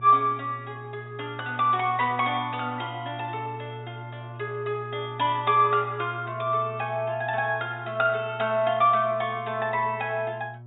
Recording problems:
treble missing; nothing above 4 kHz
electrical hum; 60 Hz, harmonics up to 720 Hz, SNR 15 dB

